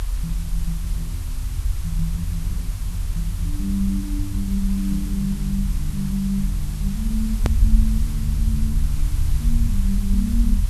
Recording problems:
lossy compression; Vorbis, log-spectral distance 2 dB, nothing above 13.1 kHz
hiss; slope 0 dB per octave, SNR 12 dB
low-frequency rumble; below 60 Hz, SNR -2 dB
edit click; at 7.5 s

